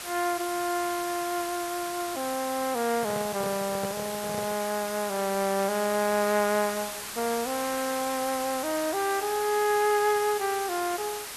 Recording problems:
background hiss; slope 0 dB per octave, SNR 7 dB
microphone handling noise; from 3 to 4.5 s; peak -4 dB vs average level

